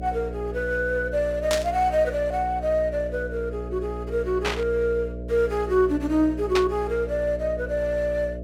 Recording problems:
hum; 60 Hz, harmonics up to 660 Hz, SNR 10 dB
burst of static; at 1.5 s, at 4.5 s and at 6.5 s; peak +2 dB vs average level

